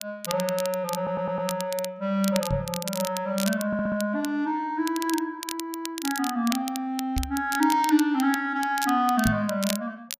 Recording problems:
crackle; vinyl, SNR 9 dB
stutter; at 1 s and at 3.5 s
knock on the microphone; at 2.5 s, at 7 s and at 9.5 s; peak +2 dB vs average level

